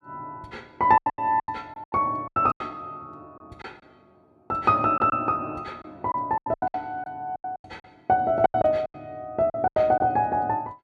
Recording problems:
lost packets; 14% of the sound replaced, filled with silence

